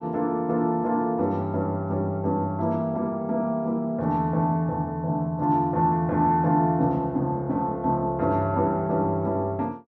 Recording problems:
none

